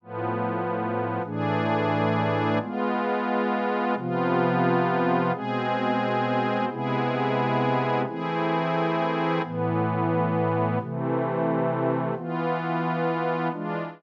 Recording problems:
none

